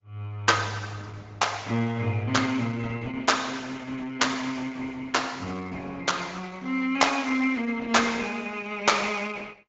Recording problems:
treble missing; nothing above 7.3 kHz
lossy codec; Opus, log-spectral distance 4 dB

